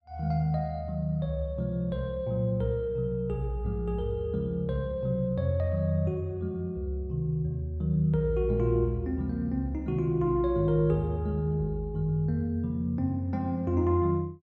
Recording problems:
none

